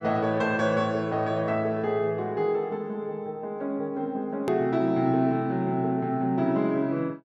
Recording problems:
hard cut with a click; at 4.5 s

